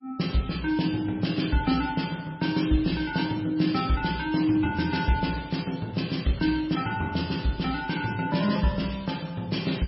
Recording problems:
lossy codec; MP3, log-spectral distance 5 dB, nothing above 5.5 kHz

